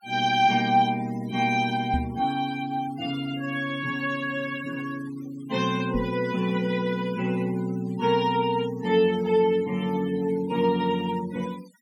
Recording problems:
noise reduction artefacts; signal-to-artefact ratio 19 dB
knock on the microphone; at 2 s and at 6 s; peak +1 dB vs average level

